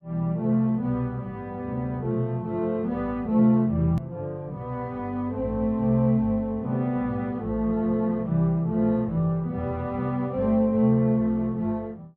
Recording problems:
edit click; at 4 s

